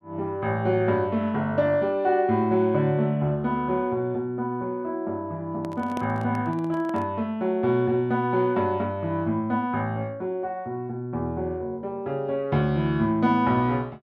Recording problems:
handling noise; from 5.5 to 7 s; peak -5 dB vs average level

